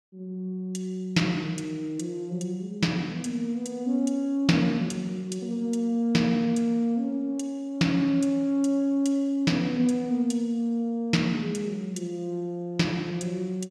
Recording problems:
none

